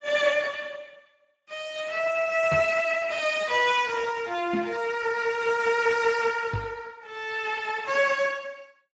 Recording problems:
lossy compression; Speex, log-spectral distance 5 dB, nothing above 7.6 kHz
microphone bump; at 2.5 s, at 4.5 s and at 6.5 s; peak -1 dB vs average level

